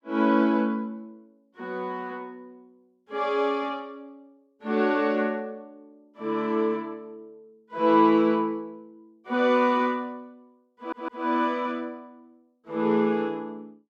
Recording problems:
audio stuttering; at 11 s

